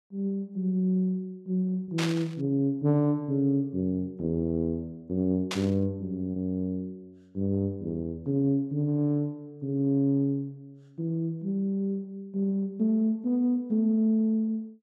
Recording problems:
lost packets; 0.6% of the sound replaced, filled with repeated pitch periods
burst of static; at 2 s and at 5.5 s; peak 0 dB vs average level

